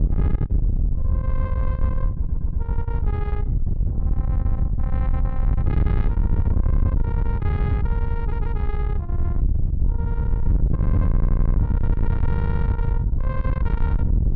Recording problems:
distortion; soft clipping, signal-to-distortion ratio 11 dB
wind noise; below 92 Hz, SNR -13 dB
audio stuttering; 4 times, first at 2 s

